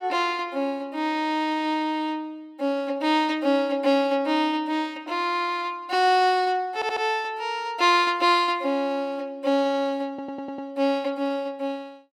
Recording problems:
audio stuttering; at 6.5 s and at 10 s

